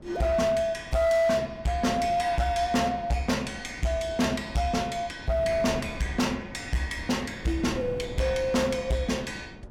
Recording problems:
distortion; hard clipping, signal-to-distortion ratio 10 dB
wind on the microphone; below 350 Hz, SNR 16 dB

